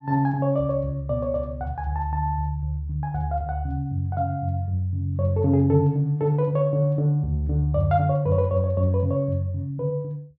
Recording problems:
treble missing; nothing above 8 kHz

